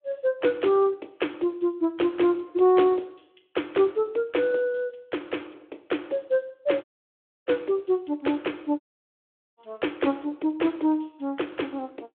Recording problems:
phone line; 260 Hz to 3.6 kHz, Speex
audio cutting out; at 7 s for 0.5 s and at 9 s for 1 s

